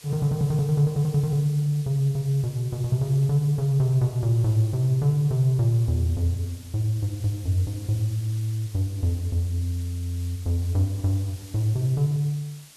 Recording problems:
background hiss; slope +1 dB per octave, SNR 22 dB

